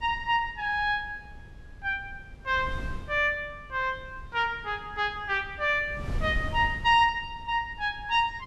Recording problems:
wind noise; below 130 Hz, SNR 14 dB

